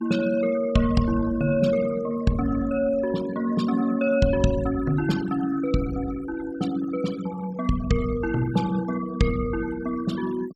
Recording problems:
noise reduction artefacts; signal-to-artefact ratio 16 dB

